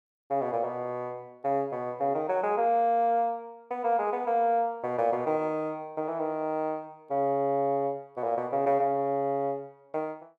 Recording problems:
none

